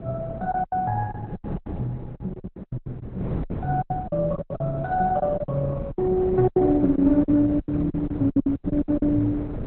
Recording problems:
codec artefacts; Opus, log-spectral distance 2 dB
wind noise; below 300 Hz, SNR 10 dB
packet loss; 18% of the sound replaced, filled with silence

